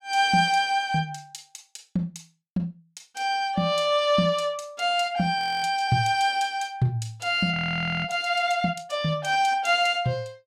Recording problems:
frozen audio; at 5.5 s and at 7.5 s

